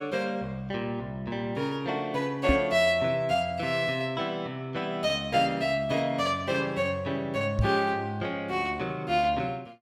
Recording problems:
knock on the microphone; at 2.5 s and at 7.5 s; peak +6 dB vs average level

